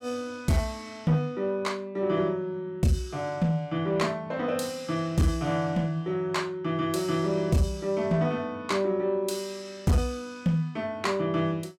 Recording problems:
distorted audio; soft clipping, signal-to-distortion ratio 12 dB

